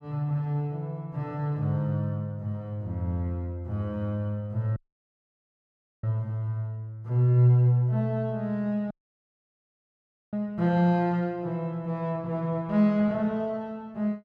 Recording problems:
audio cutting out; at 5 s for 1.5 s and at 9 s for 1.5 s

